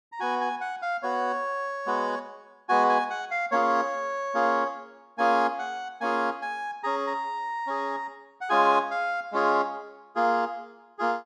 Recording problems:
none

